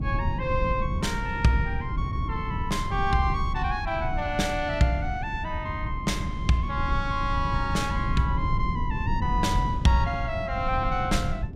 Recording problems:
rumble; below 140 Hz, SNR 4 dB

